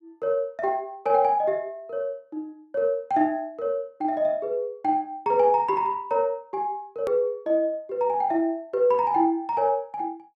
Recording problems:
hard cut with a click; at 7 s

